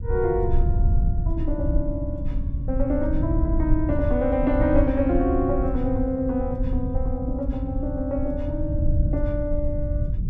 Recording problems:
rumble; below 90 Hz, SNR 1 dB

